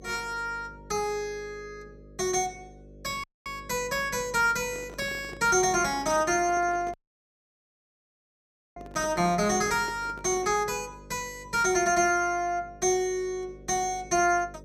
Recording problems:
hum; 50 Hz, harmonics up to 600 Hz, SNR 22 dB
dropout; at 3 s and at 7 s for 2 s
microphone handling noise; from 4.5 to 11 s; peak -11 dB vs average level

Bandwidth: 16.5 kHz